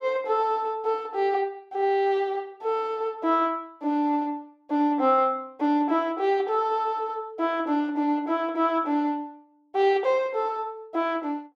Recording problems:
none

